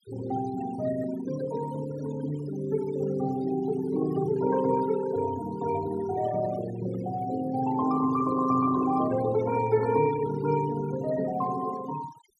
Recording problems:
denoising artefacts; signal-to-artefact ratio 15 dB

